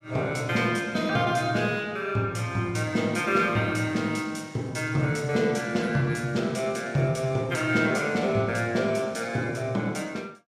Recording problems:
none

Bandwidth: 15 kHz